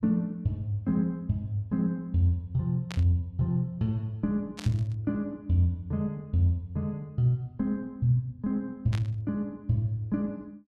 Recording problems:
burst of static; at 3 s, at 4.5 s and at 9 s; peak -6 dB vs average level

